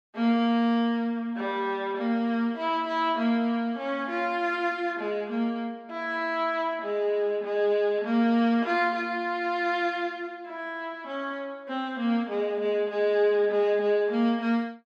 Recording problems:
none

